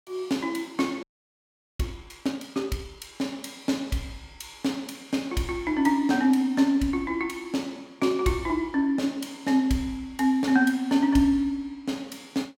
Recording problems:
audio freezing; at 1 s for 1 s

